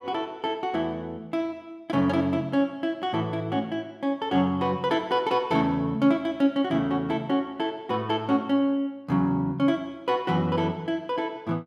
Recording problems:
none

